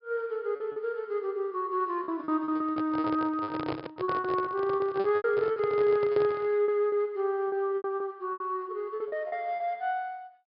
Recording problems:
treble cut off; nothing above 5.5 kHz
lost packets; 12% of the sound replaced, filled with repeated pitch periods
microphone handling noise; from 2.5 to 6.5 s; peak 0 dB vs average level

